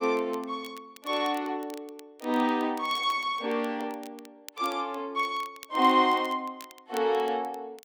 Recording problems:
crackle; vinyl, SNR 22 dB

